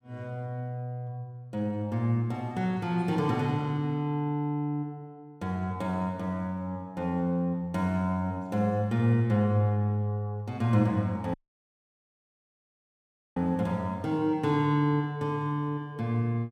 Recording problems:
audio cutting out; at 11 s for 2 s

